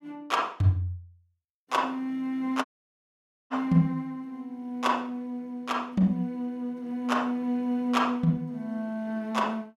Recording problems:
dropout; at 2.5 s for 1 s

